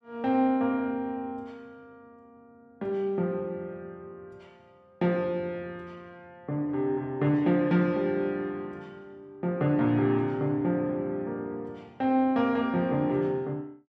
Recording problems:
none

